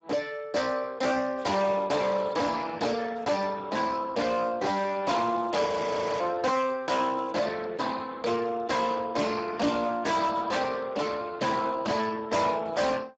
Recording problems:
lossy codec; Speex, log-spectral distance 5 dB, nothing above 7.6 kHz
distorted audio; hard clipping, signal-to-distortion ratio 7 dB
audio freezing; at 5.5 s for 0.5 s

